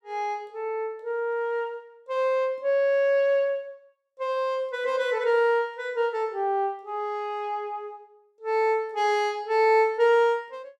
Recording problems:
none

